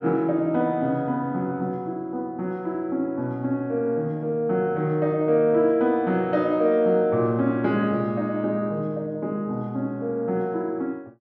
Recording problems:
none

